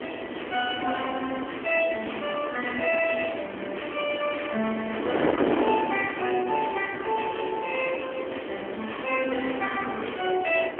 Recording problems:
phone line; 260 Hz to 3.3 kHz, AMR-NB
hiss; SNR 20 dB
wind noise; below 690 Hz, SNR 5 dB

